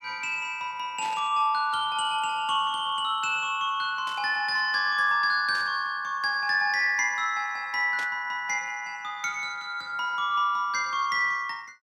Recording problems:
static burst; 4 times, first at 1 s; peak -10 dB vs average level

